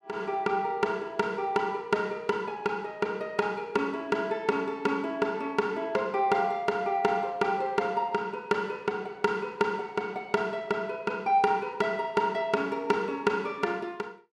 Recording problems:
none

